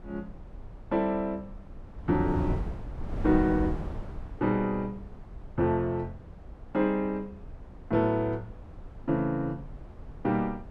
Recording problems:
wind on the microphone; below 150 Hz, SNR 11 dB

